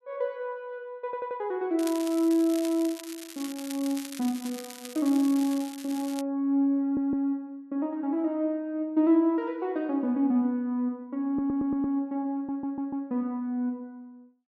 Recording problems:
stutter; 4 times, first at 1 s
crackle; from 2 to 6 s; loose cable, SNR 14 dB

